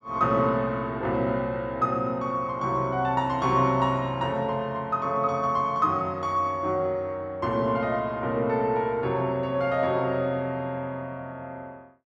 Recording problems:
none

